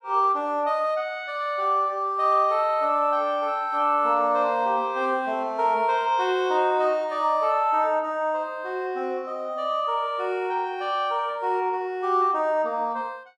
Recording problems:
none

